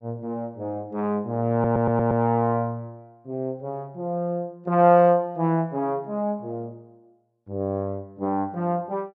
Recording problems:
audio stuttering; at 1.5 s

